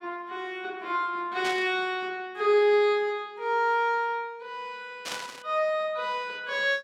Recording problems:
burst of static; at 1.5 s and at 5 s; peak -3 dB vs average level

